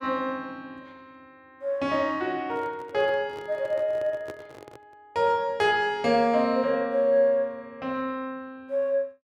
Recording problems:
microphone handling noise; from 2.5 to 5 s; peak -9 dB vs average level

